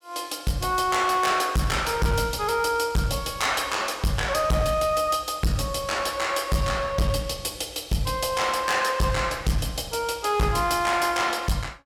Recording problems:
distortion; hard clipping, uneven, signal-to-distortion ratio 8 dB

